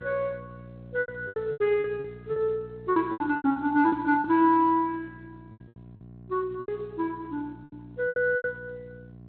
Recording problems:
codec artefacts; Speex, log-spectral distance 2 dB
hum; 60 Hz, harmonics up to 720 Hz, SNR 19 dB
lost packets; 13% of the sound replaced, filled with repeated pitch periods

